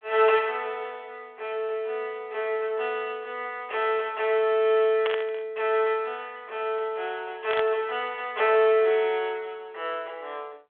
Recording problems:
telephone audio; 340 Hz to 3.4 kHz, G.726
static burst; at 5 s and at 7.5 s; peak -1 dB vs average level

